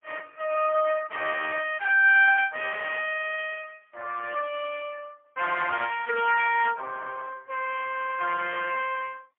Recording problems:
phone line; 300 Hz to 3.1 kHz, AMR-NB, then MP3

